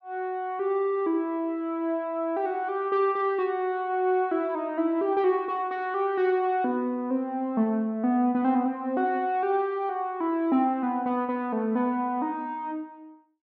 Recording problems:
none

